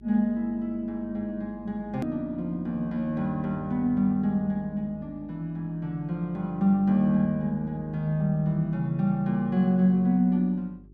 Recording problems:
mains hum; 50 Hz, harmonics up to 400 Hz, SNR 25 dB
click at an edit; at 2 s

